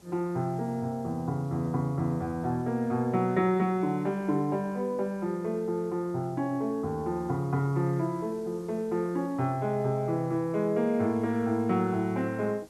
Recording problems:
hiss; SNR 27 dB

